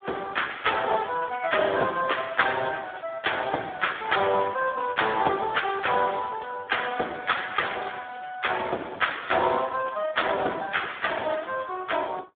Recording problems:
phone line; 240 Hz to 3.5 kHz, Speex

